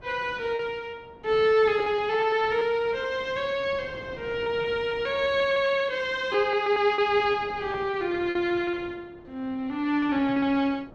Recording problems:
wind on the microphone; below 610 Hz, SNR 22 dB
packet loss; 7% of the sound replaced, filled with repeated pitch periods

